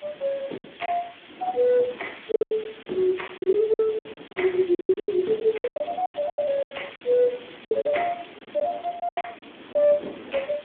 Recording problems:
phone line; 220 Hz to 3.5 kHz, Speex
hiss; SNR 20 dB
wind noise; below 640 Hz, SNR 20 dB
packet loss; 15% of the sound replaced, filled with silence
crackle; from 1.5 to 4.5 s and from 4.5 to 7.5 s; loose cable, SNR 27 dB

